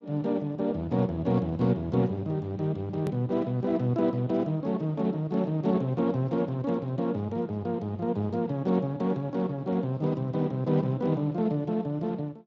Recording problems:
lossy compression; Speex, log-spectral distance 2 dB, nothing above 13.1 kHz
click at an edit; at 3 s

